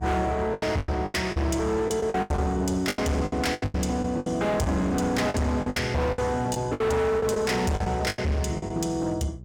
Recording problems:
distorted audio; hard clipping, signal-to-distortion ratio 7 dB
hum; 60 Hz, harmonics up to 600 Hz, SNR 18 dB
lost packets; 15% of the sound replaced, filled with the last packet

